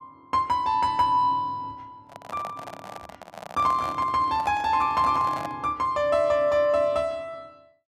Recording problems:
microphone handling noise; from 2 to 5.5 s; peak -7 dB vs average level

